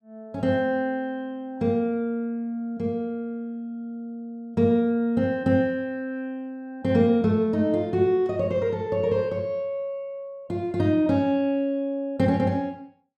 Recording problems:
none

